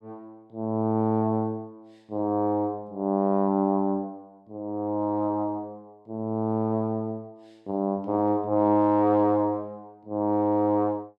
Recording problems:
none

